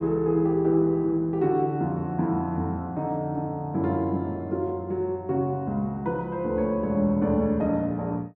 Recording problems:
none

